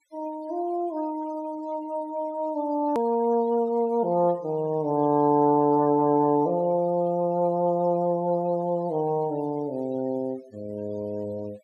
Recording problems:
denoising artefacts; signal-to-artefact ratio 26 dB
edit click; at 3 s

